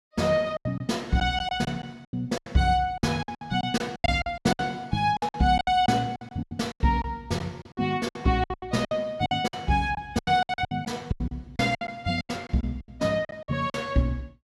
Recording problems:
lost packets; 18% of the sound replaced, filled with silence

